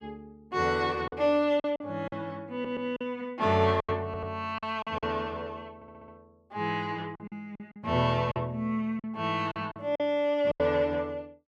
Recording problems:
lost packets; 8% of the sound replaced, filled with silence
audio stuttering; at 2.5 s, at 4 s and at 6 s

